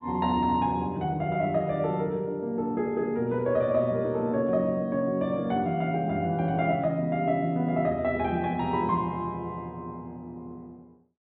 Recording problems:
low-pass filter; nothing above 4 kHz

